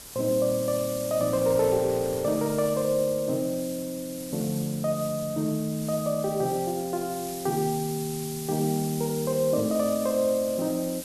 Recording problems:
background hiss; SNR 11 dB
wind noise; below 1.6 kHz, SNR 23 dB

